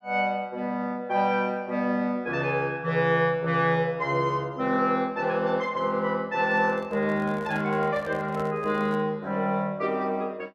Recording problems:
microphone handling noise; from 6.5 to 9 s; peak -9 dB vs average level

